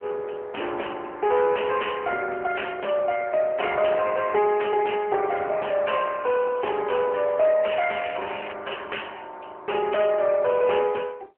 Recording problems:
telephone audio; 300 Hz to 3 kHz, AMR-NB
distorted audio; soft clipping, signal-to-distortion ratio 11 dB
crackle; at 7.5 s; loose cable, SNR 13 dB

